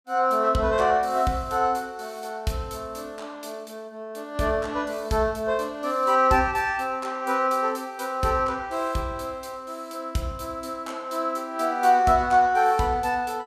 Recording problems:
none

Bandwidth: 15.5 kHz